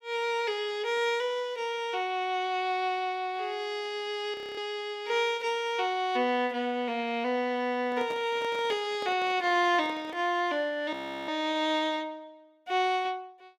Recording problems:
frozen audio; at 4.5 s and at 11 s
handling noise; from 8 to 10 s; peak -8 dB vs average level

